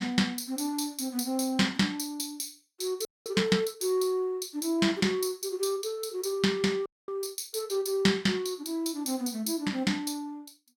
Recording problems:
audio freezing; at 3 s and at 7 s

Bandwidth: 17.5 kHz